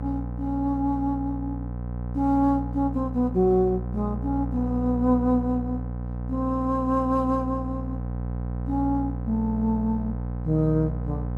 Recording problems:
electrical hum; 60 Hz, harmonics up to 1 kHz, SNR 6 dB

